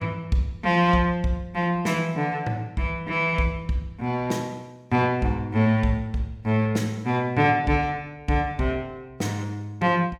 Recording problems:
none

